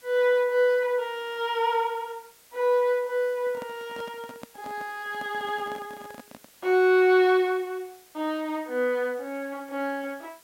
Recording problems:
hiss; slope 0 dB per octave, SNR 27 dB
handling noise; from 3.5 to 6.5 s; peak -11 dB vs average level

